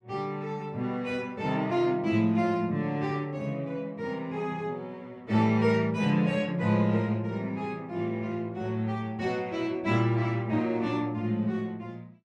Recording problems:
none

